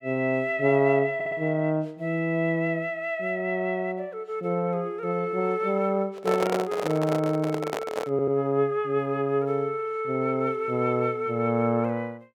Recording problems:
audio stuttering; at 1 s and at 8 s
handling noise; from 6 to 8.5 s; peak +2 dB vs average level

